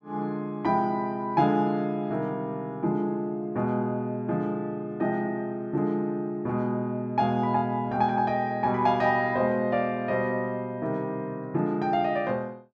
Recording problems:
none

